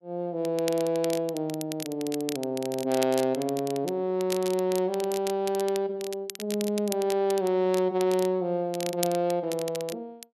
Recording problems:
crackle; vinyl, SNR 12 dB

